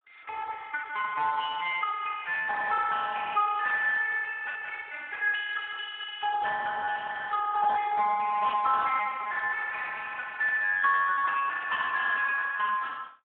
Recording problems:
phone line; 880 Hz to 2.1 kHz, Speex

